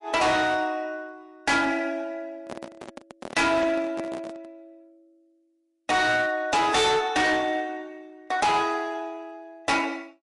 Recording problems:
codec artefacts; MP3, log-spectral distance 2 dB, nothing above 11 kHz
distorted audio; hard clipping, uneven, signal-to-distortion ratio 7 dB
handling noise; from 2.5 to 4.5 s; peak -7 dB vs average level

